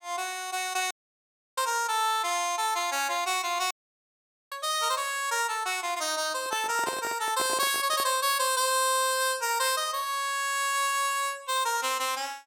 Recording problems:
dropout; at 1 s for 0.5 s and at 3.5 s for 1 s
handling noise; from 6.5 to 8 s; peak -3 dB vs average level

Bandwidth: 17 kHz